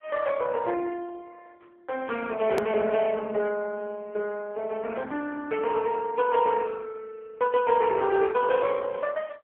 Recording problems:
telephone audio; 260 Hz to 3.1 kHz, AMR-NB
edit click; at 2.5 s

